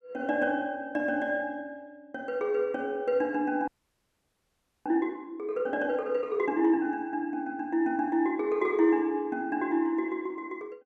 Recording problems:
audio freezing; at 3.5 s for 1 s

